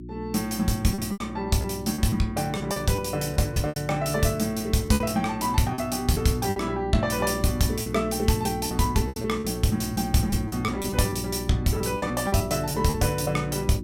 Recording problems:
hum; 60 Hz, harmonics up to 360 Hz, SNR 10 dB
packet loss; 9% of the sound replaced, filled with repeated pitch periods

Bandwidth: 16.5 kHz